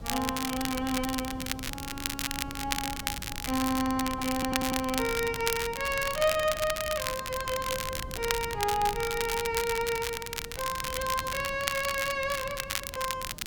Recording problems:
hiss; SNR 26 dB
wind noise; below 190 Hz, SNR 13 dB
crackle; vinyl, SNR 4 dB
audio stuttering; at 2 s, at 3.5 s and at 4.5 s

